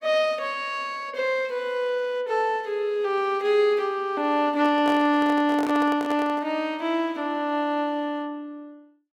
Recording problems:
handling noise; from 4.5 to 6.5 s; peak -5 dB vs average level

